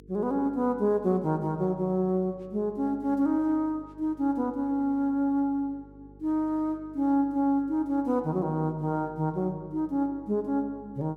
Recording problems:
hum; 50 Hz, harmonics up to 450 Hz, SNR 25 dB

